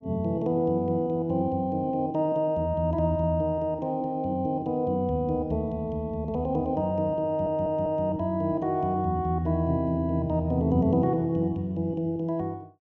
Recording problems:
stutter; at 7.5 s

